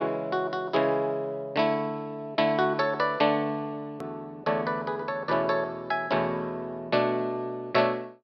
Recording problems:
low-pass filter; nothing above 5.5 kHz
edit click; at 4 s

